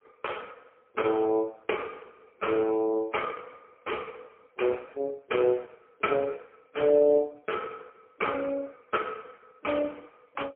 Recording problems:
phone line; 300 Hz to 3.2 kHz, AMR-NB, then MP3

